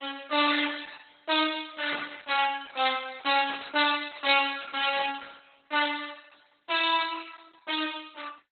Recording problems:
lossy compression; Opus, log-spectral distance 9 dB, nothing above 4 kHz
static burst; at 2 s, at 3.5 s and at 5 s; peak -9 dB vs average level

